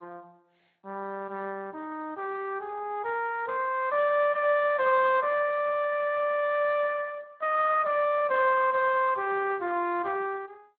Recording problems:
lossy codec; MP2, then Speex, log-spectral distance 3 dB, nothing above 3.7 kHz

